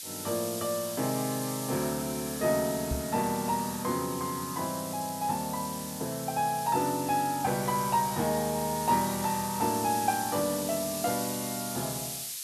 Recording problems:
hiss; SNR 6 dB
knock on the microphone; at 3 s; peak 0 dB vs average level

